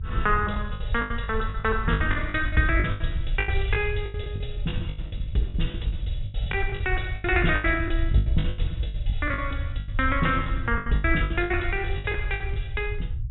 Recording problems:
low-pass filter; nothing above 3.8 kHz
rumble; below 84 Hz, SNR 3 dB
packet loss; 19% of the sound replaced, filled with the last packet

